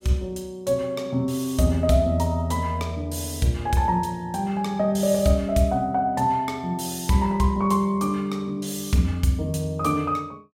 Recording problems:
none

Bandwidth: 16 kHz